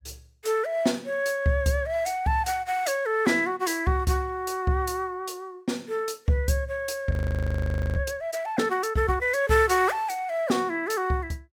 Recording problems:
frozen audio; at 7 s for 1 s

